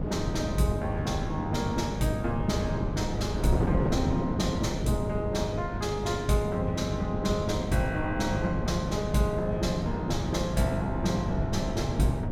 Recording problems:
hum; 50 Hz, harmonics up to 550 Hz, SNR 7 dB
wind on the microphone; below 320 Hz, SNR 3 dB

